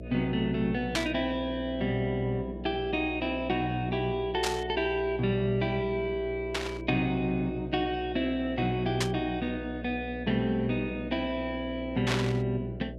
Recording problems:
hum; 60 Hz, harmonics up to 660 Hz, SNR 11 dB
burst of static; 5 times, first at 1 s; peak +4 dB vs average level

